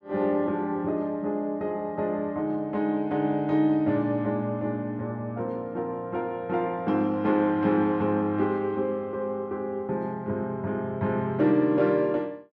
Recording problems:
none

